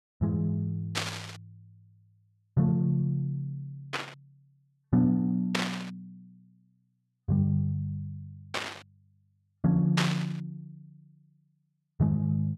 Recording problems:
burst of static; 5 times, first at 1 s; peak +5 dB vs average level

